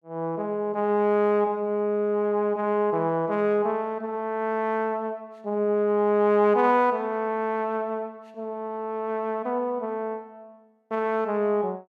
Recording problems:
none

